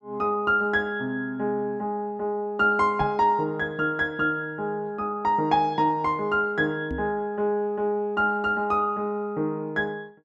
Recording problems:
microphone bump; at 3 s and at 7 s; peak -3 dB vs average level

